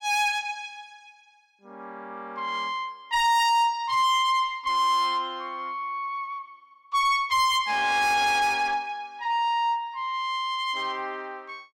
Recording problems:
distorted audio; soft clipping, signal-to-distortion ratio 8 dB

